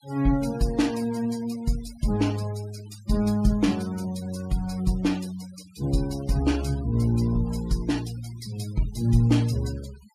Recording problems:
noise reduction artefacts; signal-to-artefact ratio 20 dB

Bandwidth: 14.5 kHz